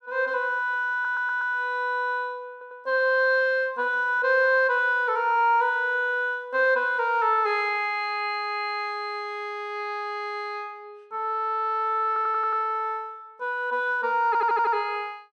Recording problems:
stutter; 4 times, first at 1 s

